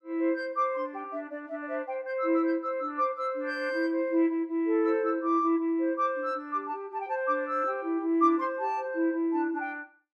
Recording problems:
none

